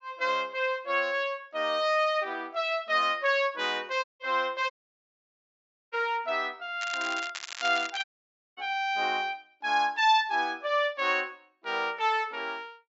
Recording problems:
treble cut off; nothing above 8 kHz
dropout; at 4 s, at 4.5 s for 1 s and at 8 s for 0.5 s
crackle; from 7 to 8 s; loose cable, SNR 11 dB

